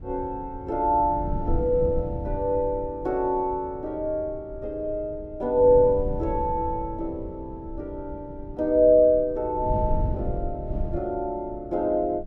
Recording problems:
wind on the microphone; below 110 Hz, SNR 11 dB

